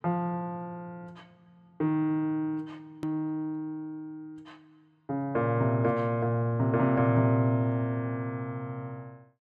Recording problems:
edit click; at 3 s

